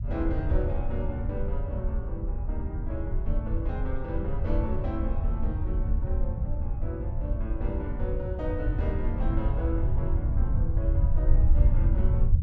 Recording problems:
low-frequency rumble; below 78 Hz, SNR -7 dB

